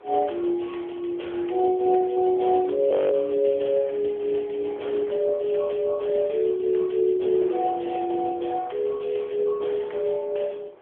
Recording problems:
phone line; 300 Hz to 3.4 kHz, AMR-NB
wind on the microphone; below 760 Hz, SNR 23 dB
frozen audio; at 3 s

